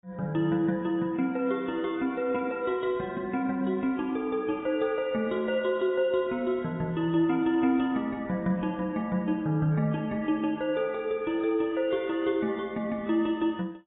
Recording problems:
lossy codec; AAC, log-spectral distance 2 dB, nothing above 3.3 kHz

